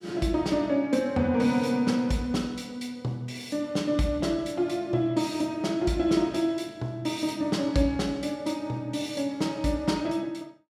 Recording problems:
none

